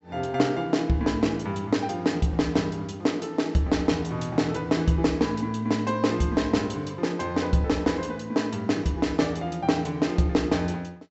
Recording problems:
treble cut off; nothing above 7.8 kHz

